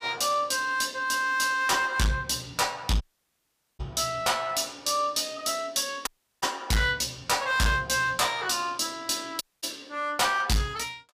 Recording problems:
distortion; hard clipping, uneven, signal-to-distortion ratio 7 dB
dropout; at 3 s for 1 s, at 6 s and at 9.5 s

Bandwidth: 15 kHz